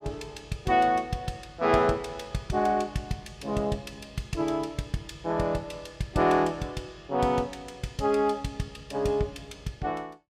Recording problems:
none

